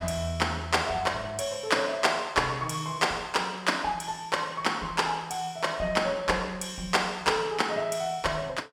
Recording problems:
none

